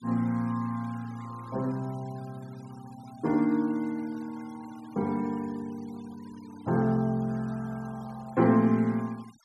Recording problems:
noise reduction artefacts; signal-to-artefact ratio 25 dB

